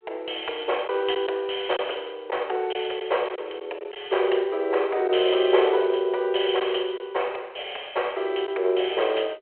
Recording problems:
telephone audio; 320 Hz to 3.2 kHz, G.726
lost packets; 2% of the sound replaced, filled with silence

